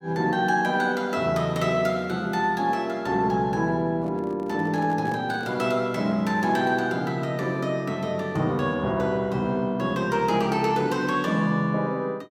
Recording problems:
handling noise; from 4 to 5.5 s; peak -9 dB vs average level

